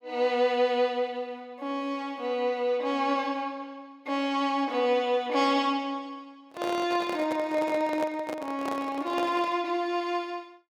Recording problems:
handling noise; from 6.5 to 9.5 s; peak -3 dB vs average level

